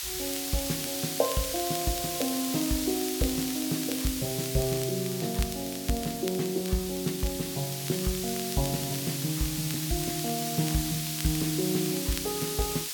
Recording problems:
background hiss; slope +4 dB per octave, SNR 2 dB
crackling; vinyl, SNR 13 dB

